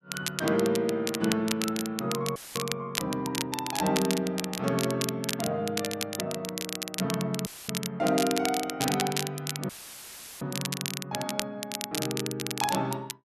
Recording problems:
crackle; vinyl, SNR 3 dB
dropout; at 2.5 s, at 7.5 s and at 9.5 s for 0.5 s; filled with static

